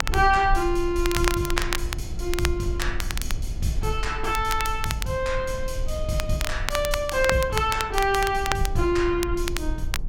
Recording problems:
rumble; below 56 Hz, SNR 8 dB
crackle; vinyl, SNR 7 dB

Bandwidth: 16.5 kHz